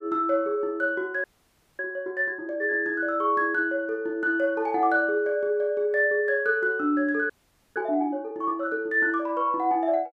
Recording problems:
frozen audio; at 1 s for 0.5 s and at 7.5 s

